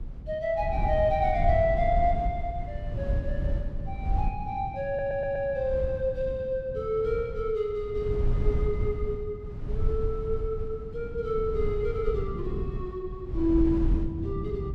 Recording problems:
rumble; below 84 Hz, SNR 4 dB
wind on the microphone; below 180 Hz, SNR 12 dB
stutter; at 5 s

